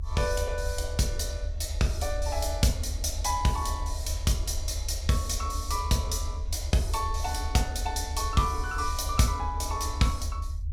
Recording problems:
rumble; below 78 Hz, SNR 5 dB

